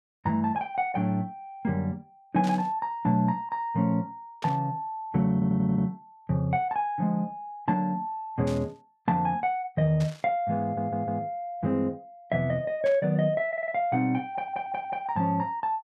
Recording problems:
burst of static; 5 times, first at 2.5 s; peak -8 dB vs average level
audio stuttering; 4 times, first at 5.5 s

